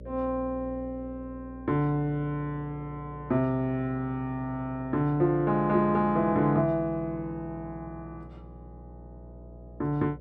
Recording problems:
hum; 60 Hz, harmonics up to 600 Hz, SNR 18 dB

